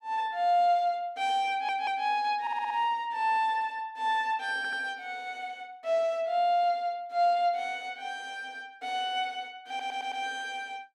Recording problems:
stutter; 4 times, first at 1.5 s

